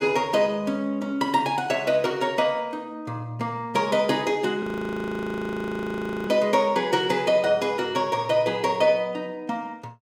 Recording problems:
frozen audio; at 4.5 s for 1.5 s

